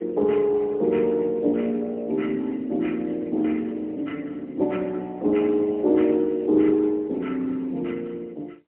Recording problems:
phone line; 240 Hz to 3.5 kHz, AMR-NB, then MP3

